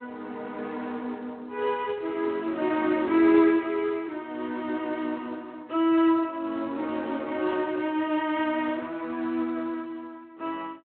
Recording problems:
phone line; 190 Hz to 3.3 kHz, Speex

